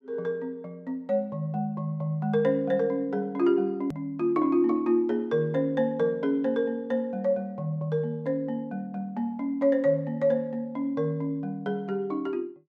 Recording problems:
edit click; at 4 s

